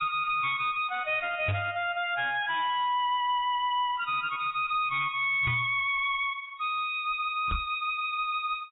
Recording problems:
lossy compression; AAC, log-spectral distance 3 dB, nothing above 3.4 kHz
distorted audio; hard clipping, signal-to-distortion ratio 9 dB
microphone thump; at 1.5 s, at 5.5 s and at 7.5 s; peak +2 dB vs average level

